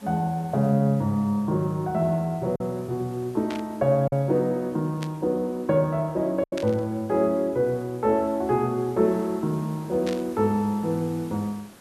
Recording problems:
hiss; slope -5 dB per octave, SNR 24 dB
packet loss; 1.4% of the sound replaced, filled with silence
static burst; 4 times, first at 3.5 s; peak -7 dB vs average level

